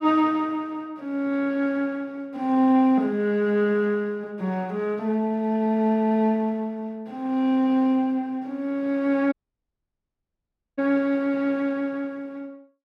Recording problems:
dropout; at 9.5 s for 1.5 s

